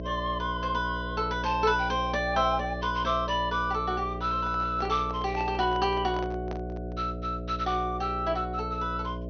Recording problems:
treble cut off; nothing above 6.3 kHz
mains hum; 60 Hz, harmonics up to 660 Hz, SNR 8 dB
handling noise; from 4.5 to 7 s; peak -7 dB vs average level

